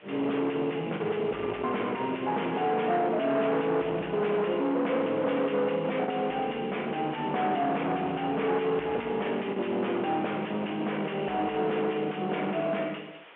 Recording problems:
telephone audio; 280 Hz to 3.2 kHz, G.711
distortion; soft clipping, signal-to-distortion ratio 7 dB
hiss; SNR 20 dB
lost packets; 0.9% of the sound replaced, filled with the last packet

